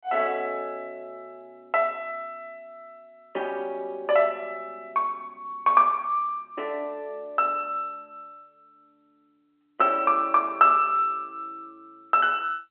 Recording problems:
telephone audio; 320 Hz to 3.3 kHz, G.711

